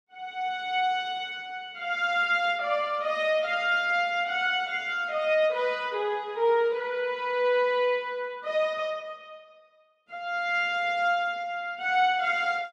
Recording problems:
none

